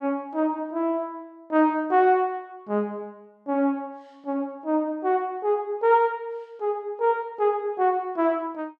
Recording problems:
none

